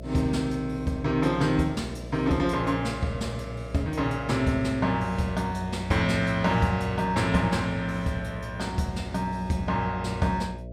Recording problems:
hum; 60 Hz, harmonics up to 660 Hz, SNR 12 dB

